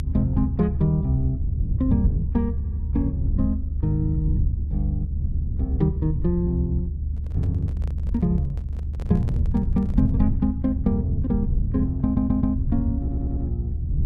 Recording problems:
low-frequency rumble; below 100 Hz, SNR 1 dB
stutter; at 2.5 s, at 12 s and at 13 s
handling noise; from 7 to 10 s; peak -10 dB vs average level

